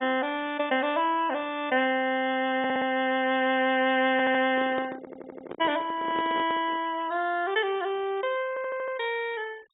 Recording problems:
treble cut off; nothing above 4 kHz
denoising artefacts; signal-to-artefact ratio 24 dB
stutter; 4 times, first at 2.5 s
microphone handling noise; from 4.5 to 7 s; peak -5 dB vs average level

